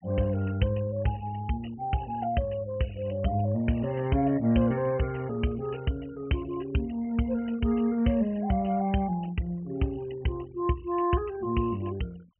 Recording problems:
treble missing; nothing above 3.1 kHz
noise reduction artefacts; signal-to-artefact ratio 23 dB

